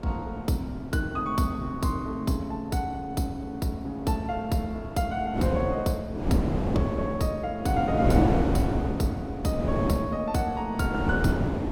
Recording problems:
wind on the microphone; below 400 Hz, SNR 1 dB

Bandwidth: 16.5 kHz